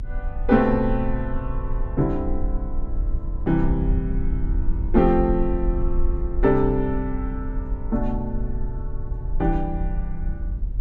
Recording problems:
low-frequency rumble; below 52 Hz, SNR 4 dB

